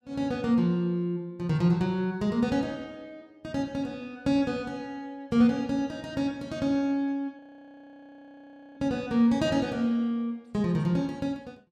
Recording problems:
frozen audio; at 7.5 s for 1.5 s

